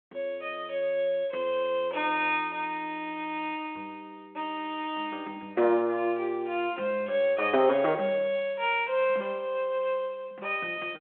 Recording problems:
telephone audio; 240 Hz to 3.3 kHz, G.726

